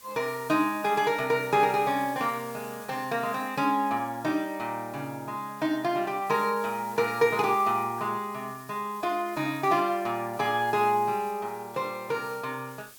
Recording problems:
hiss; slope 0 dB per octave, SNR 20 dB

